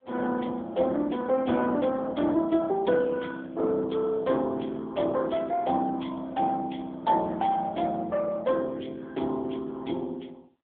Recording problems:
phone line; 220 Hz to 3.3 kHz, AMR-NB

